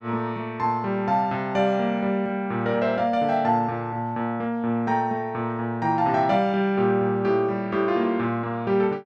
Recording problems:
none

